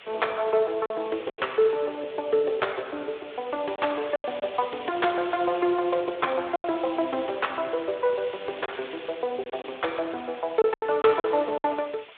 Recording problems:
telephone audio; 320 Hz to 3.6 kHz, Speex
hiss; SNR 17 dB
packet loss; 5% of the sound replaced, filled with silence

